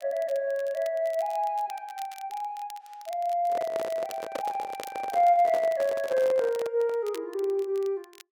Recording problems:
crackling; vinyl, SNR 22 dB
microphone handling noise; from 3.5 to 7 s; peak -2 dB vs average level

